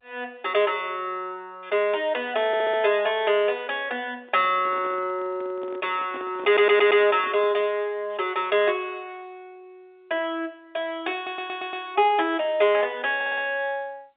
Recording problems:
phone line; 280 Hz to 3.7 kHz, G.711
audio stuttering; 4 times, first at 2.5 s
microphone handling noise; from 4 to 7.5 s; peak -12 dB vs average level

